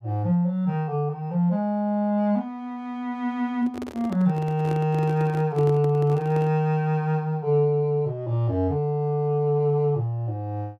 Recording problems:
handling noise; from 3.5 to 6.5 s; peak -7 dB vs average level

